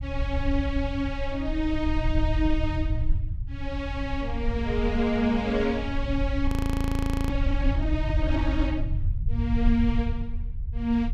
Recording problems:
rumble; below 82 Hz, SNR 1 dB
audio freezing; at 6.5 s for 1 s

